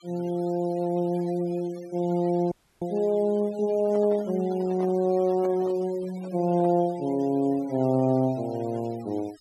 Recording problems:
denoising artefacts; signal-to-artefact ratio 24 dB
audio cutting out; at 2.5 s
handling noise; from 4 to 7 s; peak -11 dB vs average level

